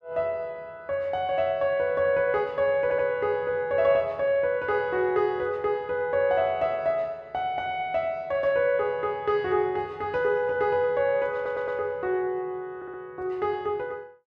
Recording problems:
audio stuttering; at 3 s, at 11 s and at 13 s

